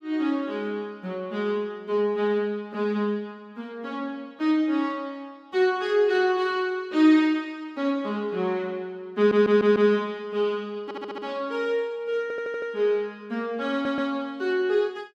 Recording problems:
audio stuttering; 4 times, first at 9 s

